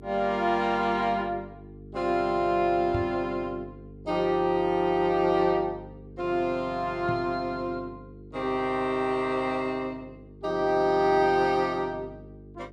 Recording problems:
mains hum; 50 Hz, harmonics up to 450 Hz, SNR 19 dB
microphone bump; at 3 s and at 7 s; peak -1 dB vs average level

